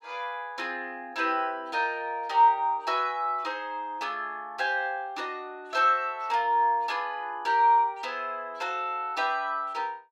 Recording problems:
none

